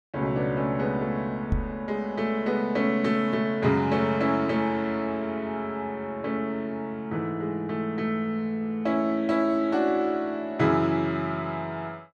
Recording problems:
microphone bump; at 1.5 s; peak +4 dB vs average level

